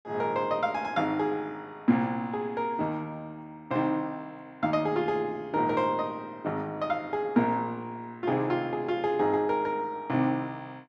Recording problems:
none

